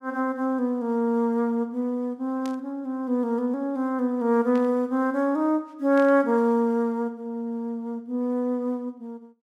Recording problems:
static burst; at 2.5 s, at 4.5 s and at 6 s; peak -13 dB vs average level

